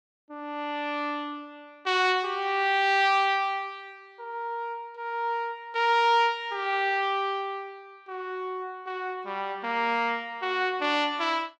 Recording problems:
none

